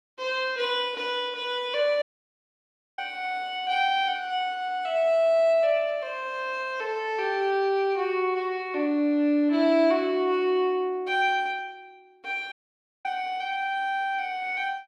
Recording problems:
audio cutting out; at 2 s for 1 s and at 13 s for 0.5 s

